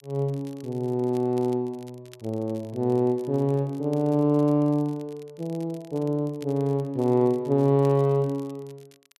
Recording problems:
crackle; vinyl, SNR 29 dB

